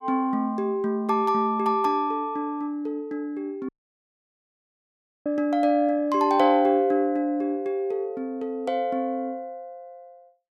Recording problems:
audio cutting out; at 3.5 s for 1.5 s

